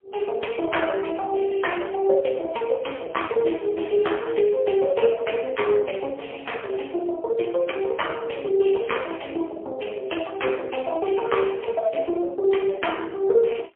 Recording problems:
telephone audio; 320 Hz to 3.3 kHz, AMR-NB, then MP3

